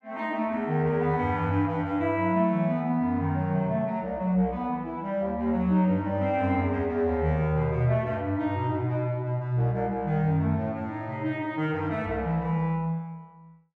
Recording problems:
none

